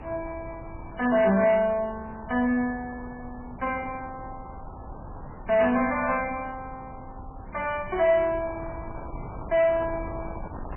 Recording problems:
lossy compression; MP3, log-spectral distance 4 dB
distorted audio; soft clipping, signal-to-distortion ratio 11 dB
wind noise; below 780 Hz, SNR 16 dB

